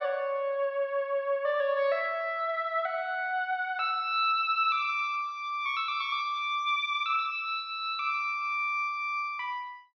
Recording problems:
treble cut off; nothing above 5.9 kHz

